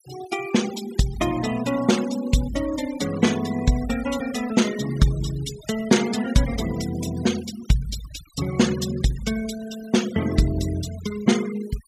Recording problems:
noise reduction artefacts; signal-to-artefact ratio 13 dB

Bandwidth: 15 kHz